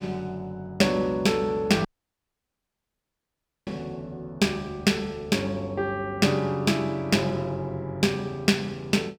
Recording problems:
audio cutting out; at 2 s for 2 s

